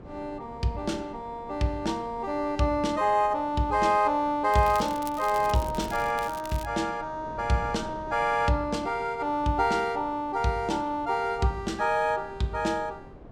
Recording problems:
wind on the microphone; below 520 Hz, SNR 19 dB
crackling; from 4.5 to 6.5 s; loose cable, SNR 18 dB

